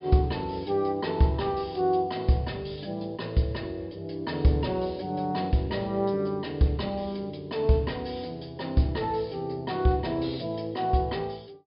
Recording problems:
treble missing; nothing above 5.5 kHz

